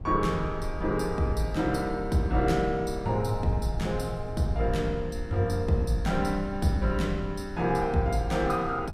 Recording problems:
rumble; below 78 Hz, SNR 12 dB

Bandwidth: 15.5 kHz